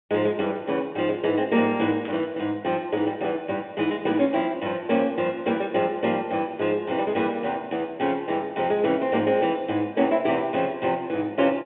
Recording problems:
phone line; 170 Hz to 3.6 kHz, G.711
burst of static; at 2 s; peak -12 dB vs average level

